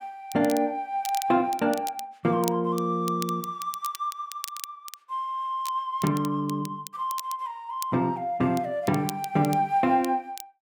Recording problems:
crackle; vinyl, SNR 14 dB

